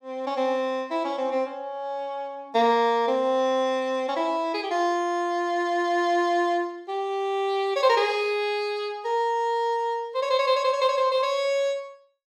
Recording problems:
none

